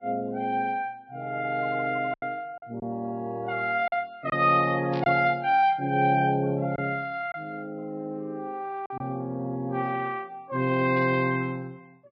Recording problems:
lossy compression; Vorbis, log-spectral distance 2 dB
lost packets; 3% of the sound replaced, filled with silence
burst of static; at 5 s and at 11 s; peak -11 dB vs average level

